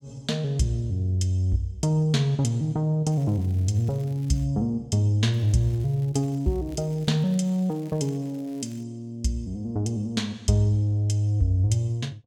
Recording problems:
crackle; from 3 to 4.5 s and from 5.5 to 9 s; loose cable, SNR 29 dB

